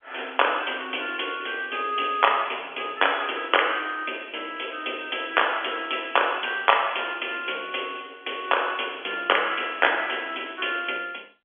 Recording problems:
telephone audio; 240 Hz to 3.4 kHz, G.711

